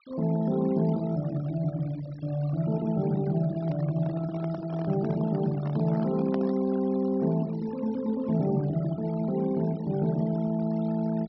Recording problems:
low-pass filter; nothing above 5.6 kHz
noise reduction artefacts; signal-to-artefact ratio 20 dB
microphone handling noise; from 3.5 to 7 s; peak -5 dB vs average level

